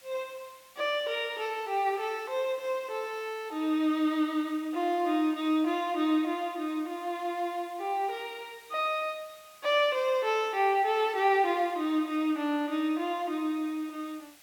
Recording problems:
hiss; slope +1 dB per octave, SNR 25 dB

